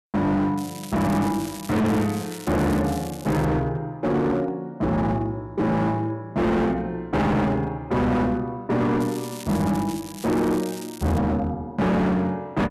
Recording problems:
distorted audio; hard clipping, signal-to-distortion ratio 7 dB
crackle; from 0.5 to 3.5 s and from 9 to 11 s; loose cable, SNR 16 dB

